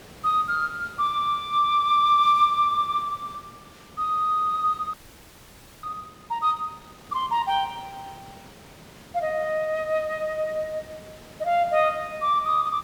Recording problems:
background hiss; slope -4 dB per octave, SNR 23 dB
audio freezing; at 5 s for 1 s

